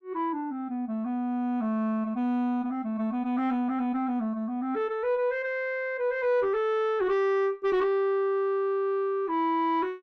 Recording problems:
distortion; soft clipping, signal-to-distortion ratio 10 dB

